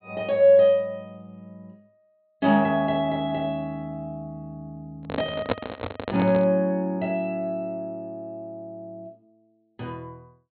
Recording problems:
low-pass filter; nothing above 4.2 kHz
handling noise; from 5 to 6.5 s; peak +3 dB vs average level

